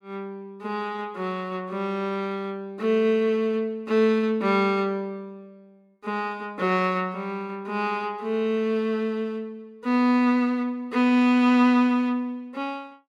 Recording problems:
none

